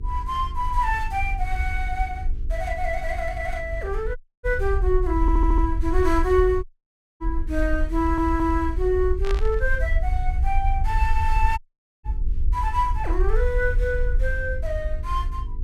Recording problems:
hum; 50 Hz, harmonics up to 450 Hz, SNR 19 dB
rumble; below 56 Hz, SNR 2 dB
audio cutting out; at 4 s, at 6.5 s for 0.5 s and at 12 s
stutter; at 5 s and at 8 s
static burst; at 9 s; peak -3 dB vs average level

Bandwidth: 16 kHz